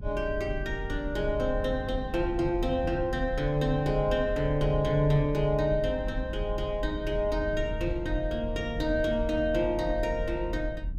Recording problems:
rumble; below 80 Hz, strongest tone 36 Hz, SNR 7 dB

